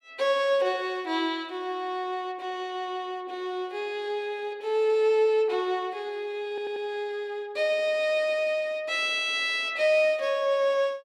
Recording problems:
stutter; at 6.5 s

